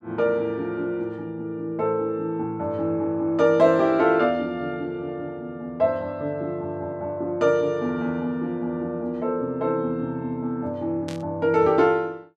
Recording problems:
burst of static; at 11 s; peak -11 dB vs average level

